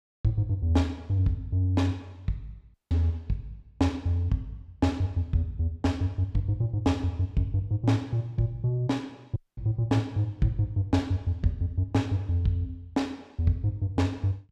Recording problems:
audio cutting out; at 2.5 s and at 9.5 s

